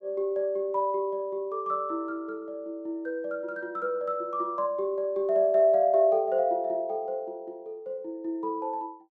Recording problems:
none

